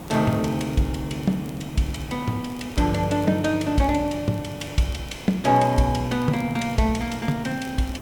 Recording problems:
background hiss; slope -7 dB per octave, SNR 15 dB
crackle; vinyl, SNR 29 dB

